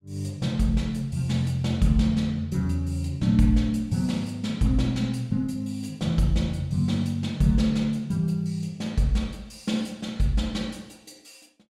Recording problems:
none

